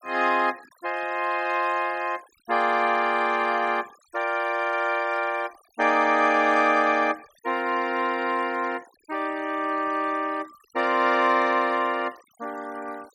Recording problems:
noise reduction artefacts; signal-to-artefact ratio 23 dB

